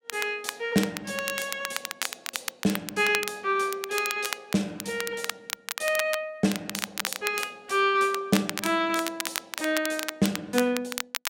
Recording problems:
crackling; vinyl, SNR 6 dB

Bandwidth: 16 kHz